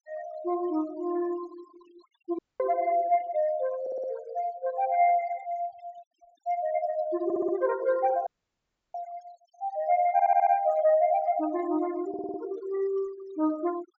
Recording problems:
treble cut off; nothing above 8 kHz
denoising artefacts; signal-to-artefact ratio 21 dB
dropout; at 2.5 s and at 8.5 s for 0.5 s
audio stuttering; 4 times, first at 4 s

